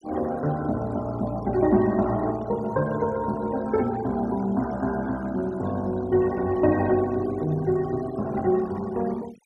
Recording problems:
noise reduction artefacts; signal-to-artefact ratio 20 dB

